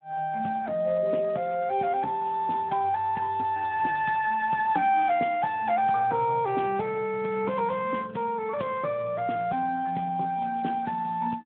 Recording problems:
telephone audio; 190 Hz to 3.5 kHz, Speex

